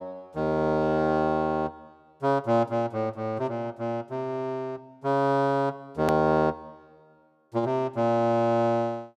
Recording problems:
click at an edit; at 6 s

